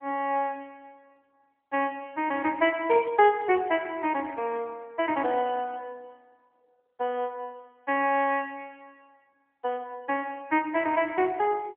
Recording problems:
telephone audio; 260 Hz to 3.2 kHz, AMR-NB

